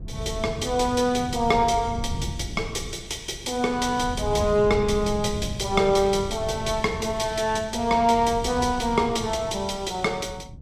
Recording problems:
wind noise; below 150 Hz, SNR 11 dB

